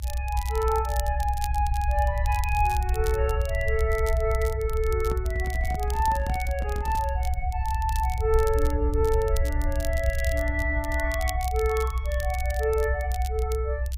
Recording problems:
low-frequency rumble; below 68 Hz, strongest tone 64 Hz, SNR 0 dB
crackle; vinyl, SNR 15 dB
microphone handling noise; from 5 to 7 s; peak -2 dB vs average level

